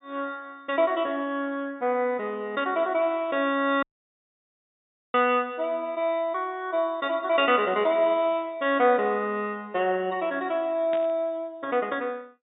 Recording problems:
treble cut off; nothing above 4 kHz
dropout; at 4 s for 1.5 s
static burst; at 11 s; peak -10 dB vs average level

